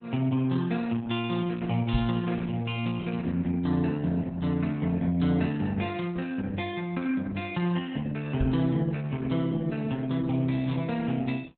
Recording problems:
lossy codec; Opus, log-spectral distance 3 dB, nothing above 3.7 kHz
microphone bump; at 2 s and at 8.5 s; peak +3 dB vs average level

